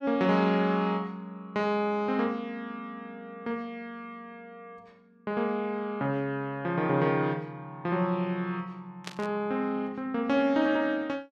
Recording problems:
static burst; at 9 s; peak -5 dB vs average level

